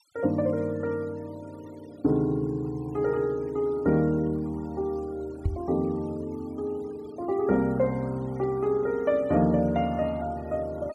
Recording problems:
noise reduction artefacts; signal-to-artefact ratio 26 dB
microphone bump; at 5.5 s; peak +4 dB vs average level

